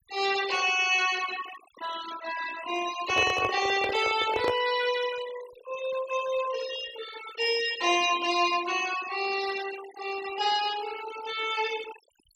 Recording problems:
noise reduction artefacts; signal-to-artefact ratio 13 dB
microphone handling noise; from 3 to 4.5 s; peak +2 dB vs average level

